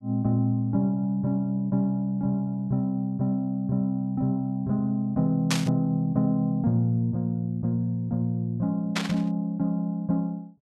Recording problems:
static burst; at 5.5 s and at 9 s; peak +4 dB vs average level

